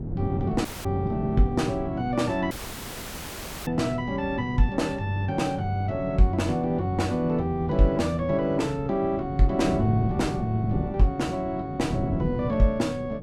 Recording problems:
wind on the microphone; below 240 Hz, SNR 8 dB
dropout; at 0.5 s and at 2.5 s for 1 s

